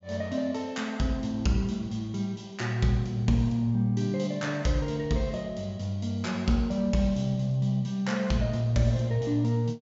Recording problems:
treble cut off; nothing above 7.5 kHz

